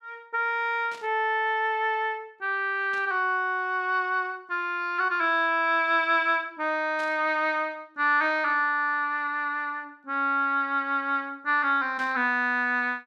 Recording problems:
static burst; 4 times, first at 1 s; peak -14 dB vs average level

